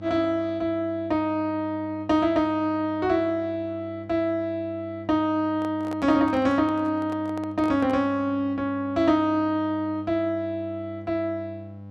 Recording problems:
hum; 50 Hz, harmonics up to 1 kHz, SNR 17 dB
handling noise; from 5.5 to 8 s; peak -9 dB vs average level

